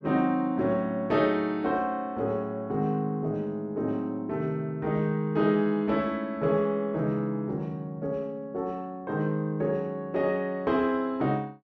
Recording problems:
none

